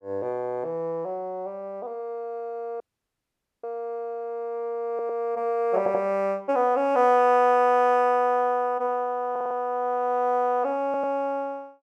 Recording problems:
audio cutting out; at 3 s for 1 s
audio stuttering; 4 times, first at 5 s

